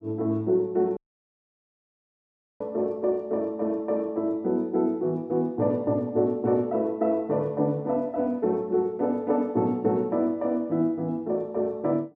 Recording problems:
dropout; at 1 s for 1.5 s

